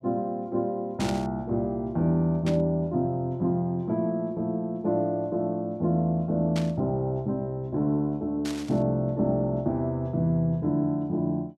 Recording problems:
static burst; 4 times, first at 1 s; peak -5 dB vs average level

